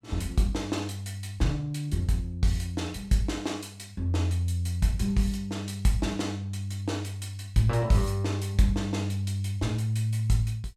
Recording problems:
none

